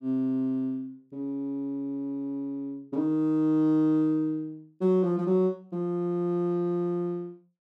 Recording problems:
none

